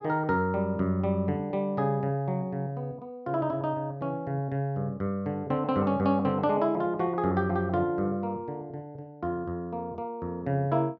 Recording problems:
none

